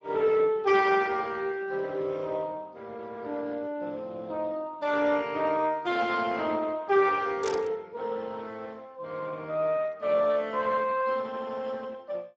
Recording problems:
lossy compression; Speex, log-spectral distance 3 dB
static burst; at 7.5 s; peak -3 dB vs average level

